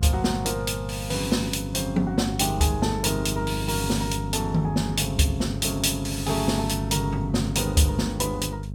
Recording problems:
electrical hum; 50 Hz, harmonics up to 450 Hz, SNR 7 dB

